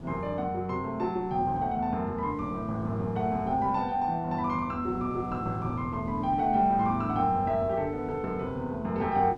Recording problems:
wind noise; below 330 Hz, SNR 15 dB

